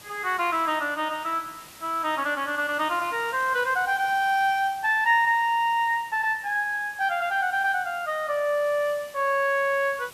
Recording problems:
hiss; slope -1 dB per octave, SNR 21 dB

